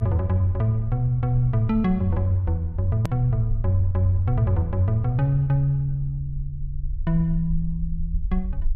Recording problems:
low-frequency rumble; below 64 Hz, SNR 10 dB
edit click; at 3 s

